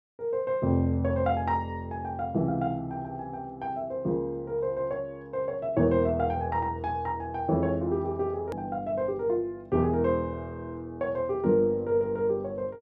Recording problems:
edit click; at 8.5 s

